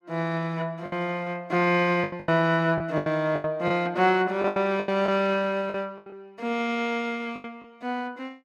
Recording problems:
packet loss; 11% of the sound replaced, filled with the last packet

